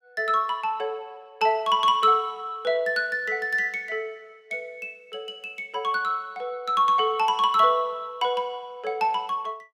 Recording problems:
none

